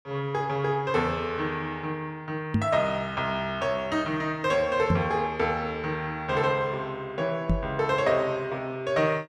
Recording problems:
microphone bump; at 2.5 s, at 5 s and at 7.5 s; peak +7 dB vs average level

